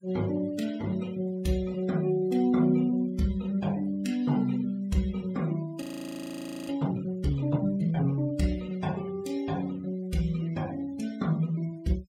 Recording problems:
noise reduction artefacts; signal-to-artefact ratio 21 dB
frozen audio; at 6 s for 1 s

